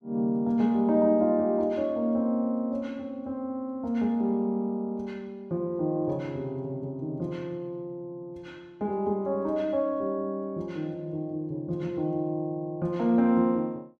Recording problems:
none

